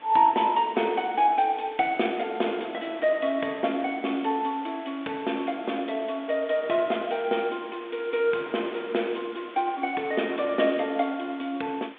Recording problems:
phone line; 240 Hz to 3.6 kHz, G.726
background hiss; SNR 21 dB
wind on the microphone; below 1.2 kHz, SNR 22 dB

